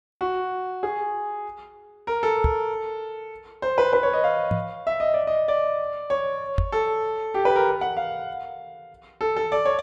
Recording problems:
microphone bump; at 2.5 s, at 4.5 s and at 6.5 s; peak +5 dB vs average level

